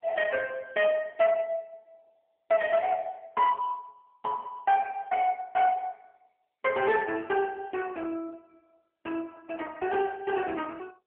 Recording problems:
telephone audio; 280 Hz to 3.1 kHz, AMR-NB
distortion; hard clipping, uneven, signal-to-distortion ratio 10 dB

